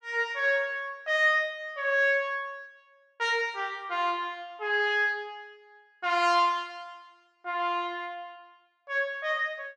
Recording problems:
none

